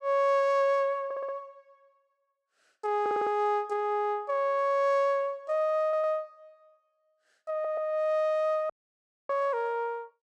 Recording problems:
stutter; 4 times, first at 1 s
dropout; at 8.5 s for 0.5 s

